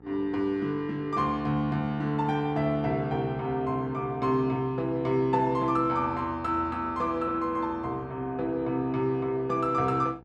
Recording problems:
hum; 60 Hz, harmonics up to 1.4 kHz, SNR 23 dB

